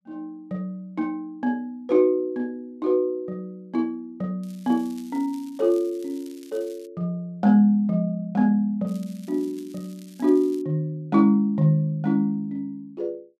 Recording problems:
crackling; from 4.5 to 7 s and from 9 to 11 s; loose cable, SNR 27 dB

